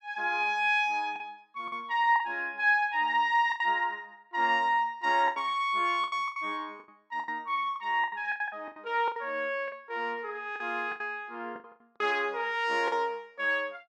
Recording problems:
packet loss; 10% of the sound replaced, filled with the last packet

